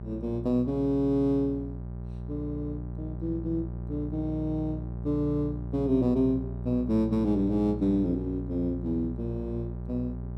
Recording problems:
hum; 60 Hz, harmonics up to 780 Hz, SNR 8 dB

